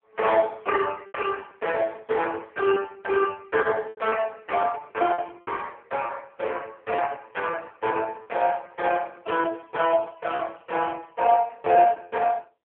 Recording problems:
phone line; 340 Hz to 3.3 kHz, AMR-NB
lost packets; 4% of the sound replaced, filled with repeated pitch periods

